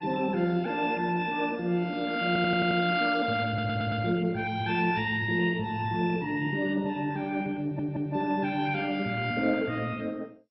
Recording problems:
lossy compression; MP2, log-spectral distance 3 dB, nothing above 4.9 kHz
stutter; at 2.5 s, at 3.5 s and at 7.5 s

